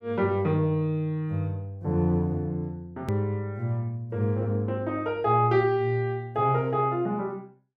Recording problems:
click at an edit; at 3 s

